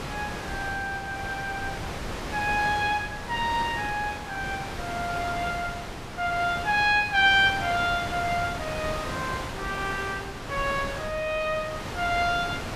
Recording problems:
wind noise; below 2 kHz, SNR 7 dB

